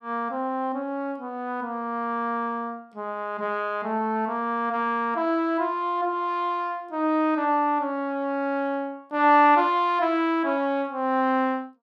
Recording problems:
none

